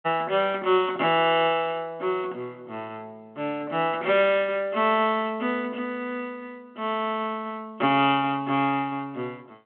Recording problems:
telephone audio; 240 Hz to 3.4 kHz, G.726

